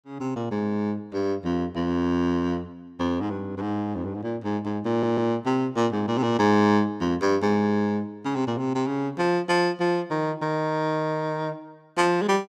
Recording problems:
stutter; at 5 s

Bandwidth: 15.5 kHz